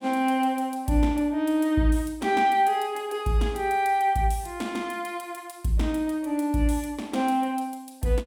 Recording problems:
none

